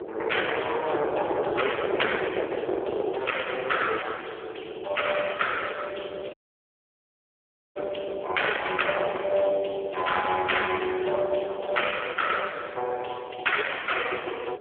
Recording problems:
phone line; 320 Hz to 3.4 kHz, AMR-NB
distortion; soft clipping, signal-to-distortion ratio 11 dB
wind noise; below 640 Hz, SNR 7 dB
dropout; at 6.5 s for 1.5 s

